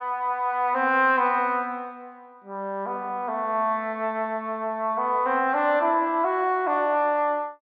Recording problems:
none

